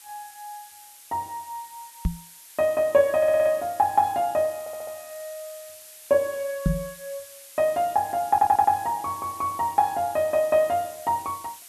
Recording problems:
background hiss; slope +3 dB per octave, SNR 19 dB
knock on the microphone; at 2 s and at 6.5 s; peak +4 dB vs average level
stutter; at 3 s, at 4.5 s and at 8.5 s

